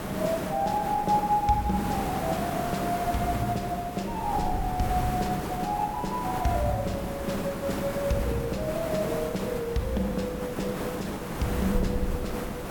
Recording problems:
hiss; slope -7 dB per octave, SNR 5 dB
wind on the microphone; below 88 Hz, SNR 13 dB

